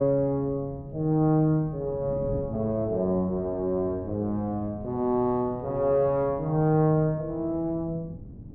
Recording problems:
wind noise; below 230 Hz, SNR 16 dB

